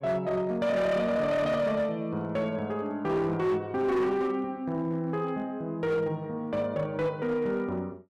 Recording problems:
distorted audio; hard clipping, signal-to-distortion ratio 12 dB

